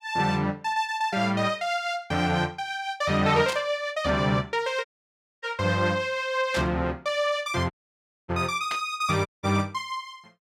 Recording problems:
burst of static; at 3.5 s, at 6.5 s and at 8.5 s; peak -2 dB vs average level
dropout; at 5 s for 0.5 s, at 7.5 s for 0.5 s and at 9.5 s

